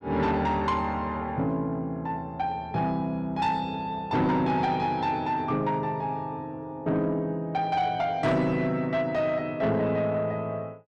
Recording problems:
distorted audio; soft clipping, signal-to-distortion ratio 11 dB

